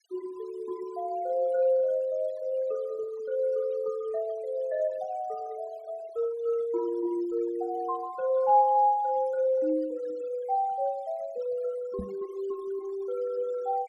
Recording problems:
denoising artefacts; signal-to-artefact ratio 24 dB
knock on the microphone; at 12 s; peak -4 dB vs average level

